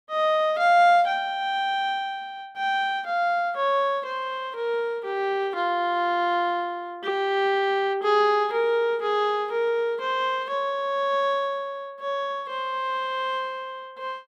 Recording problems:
none

